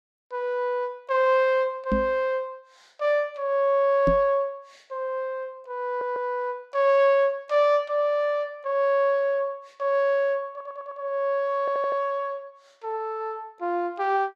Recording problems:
knock on the microphone; at 2 s and at 4 s; peak +2 dB vs average level
audio stuttering; at 6 s, at 11 s and at 12 s

